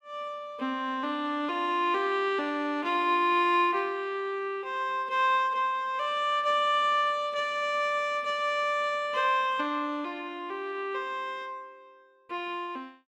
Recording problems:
none

